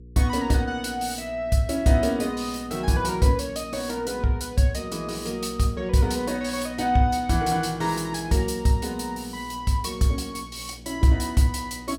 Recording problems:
hum; 60 Hz, harmonics up to 480 Hz, SNR 21 dB

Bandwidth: 17.5 kHz